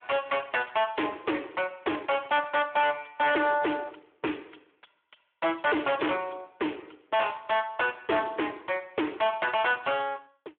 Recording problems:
phone line; 300 Hz to 3.4 kHz, Speex
distortion; hard clipping, signal-to-distortion ratio 6 dB

